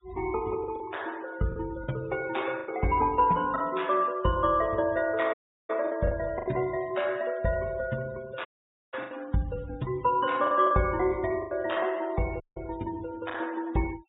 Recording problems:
treble missing; nothing above 4 kHz
noise reduction artefacts; signal-to-artefact ratio 21 dB
lost packets; 6% of the sound replaced, filled with the last packet
audio cutting out; at 5.5 s, at 8.5 s and at 12 s

